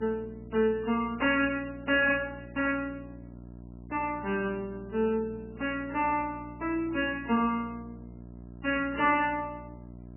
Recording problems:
lossy codec; MP3, log-spectral distance 3 dB, nothing above 2.5 kHz
electrical hum; 60 Hz, harmonics up to 960 Hz, SNR 17 dB

